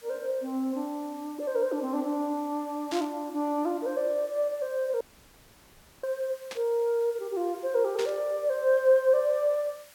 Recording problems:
background hiss; SNR 24 dB
static burst; at 3 s, at 6.5 s and at 8 s; peak -5 dB vs average level
dropout; at 5 s for 1 s

